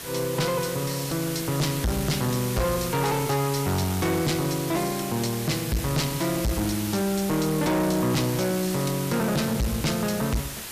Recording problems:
distortion; hard clipping, uneven, signal-to-distortion ratio 6 dB
hiss; slope -1 dB per octave, SNR 8 dB

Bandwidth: 14.5 kHz